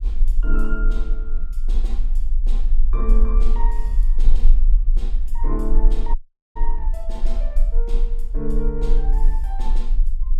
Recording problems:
low-frequency rumble; below 34 Hz, strongest tone 20 Hz, SNR -11 dB
dropout; at 6 s

